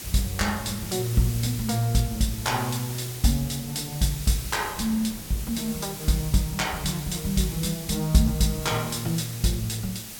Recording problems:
background hiss; SNR 10 dB
wind on the microphone; below 330 Hz, SNR 22 dB

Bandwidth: 17 kHz